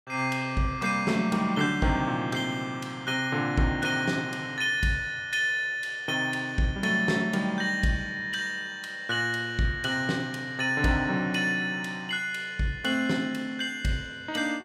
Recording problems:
none

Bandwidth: 16 kHz